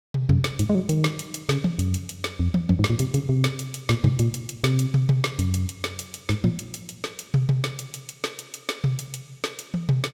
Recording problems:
none

